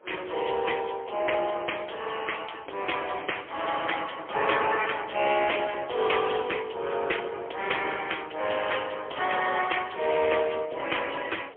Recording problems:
phone line; 340 Hz to 3.3 kHz, AMR-NB, then MP3
wind on the microphone; below 770 Hz, SNR 21 dB

